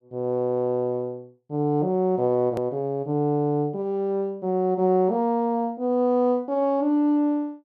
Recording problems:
hard cut with a click; at 2.5 s

